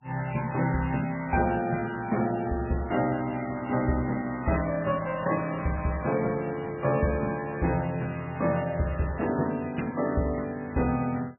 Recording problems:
codec artefacts; MP3, log-spectral distance 4 dB, nothing above 2.4 kHz

